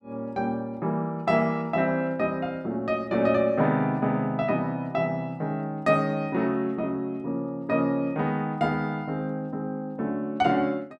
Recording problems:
none

